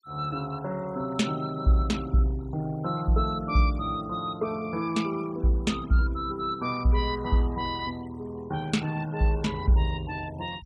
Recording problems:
denoising artefacts; signal-to-artefact ratio 22 dB

